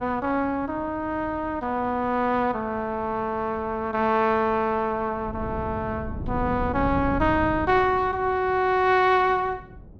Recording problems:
wind noise; below 220 Hz, SNR 14 dB

